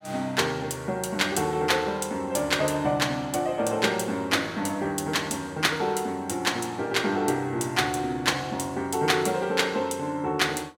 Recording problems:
none

